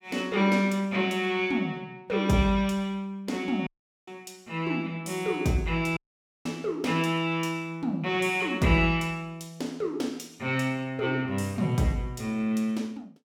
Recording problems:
audio cutting out; at 3.5 s and at 6 s

